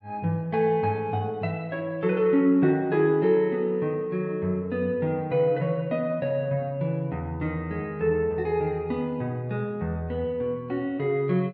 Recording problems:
none

